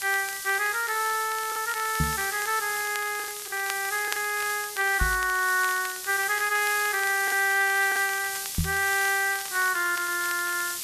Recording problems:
background hiss; SNR 7 dB
crackle; vinyl, SNR 16 dB
lost packets; 3% of the sound replaced, filled with the last packet
microphone bump; at 2 s, at 5 s and at 8.5 s; peak +2 dB vs average level

